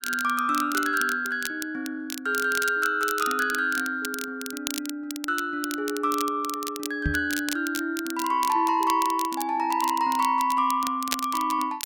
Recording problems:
crackling; vinyl, SNR 10 dB
microphone thump; at 7 s; peak +2 dB vs average level

